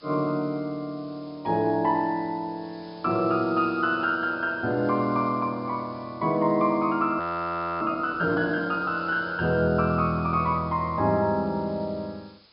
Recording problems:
low-pass filter; nothing above 5.5 kHz
hiss; SNR 27 dB
audio freezing; at 7 s for 0.5 s

